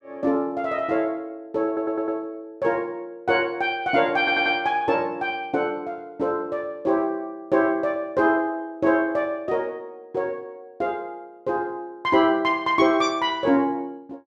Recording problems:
stutter; at 1.5 s and at 4 s

